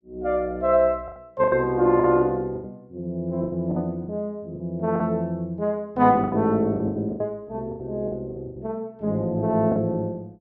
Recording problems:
lost packets; 11% of the sound replaced, filled with the last packet

